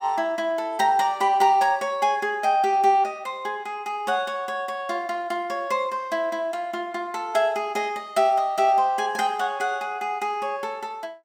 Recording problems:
none

